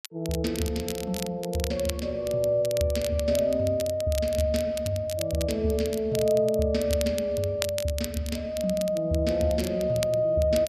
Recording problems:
crackle; vinyl, SNR 12 dB

